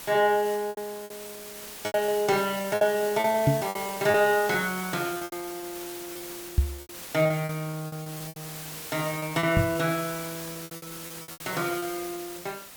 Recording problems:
background hiss; slope -1 dB per octave, SNR 11 dB
packet loss; 14% of the sound replaced, filled with repeated pitch periods
knock on the microphone; at 3.5 s, at 6.5 s and at 9.5 s; peak +8 dB vs average level

